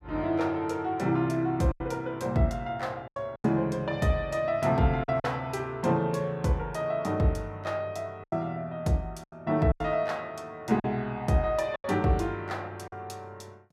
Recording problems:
lost packets; 5% of the sound replaced, filled with silence

